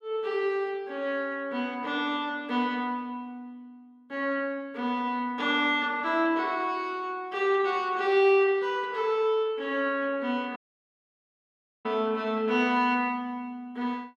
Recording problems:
audio cutting out; at 11 s for 1.5 s

